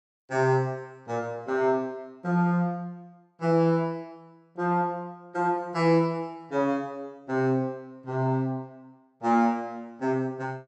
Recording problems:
none

